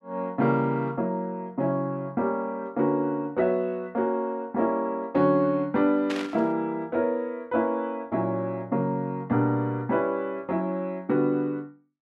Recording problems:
static burst; at 6 s; peak -3 dB vs average level

